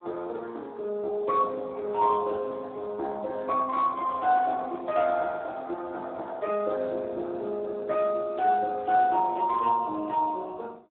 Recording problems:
telephone audio; 280 Hz to 2.8 kHz, Speex

